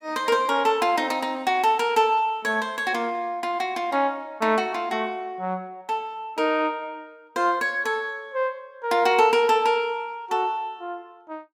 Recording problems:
none

